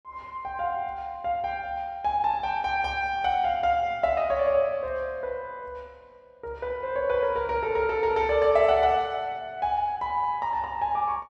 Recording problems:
none

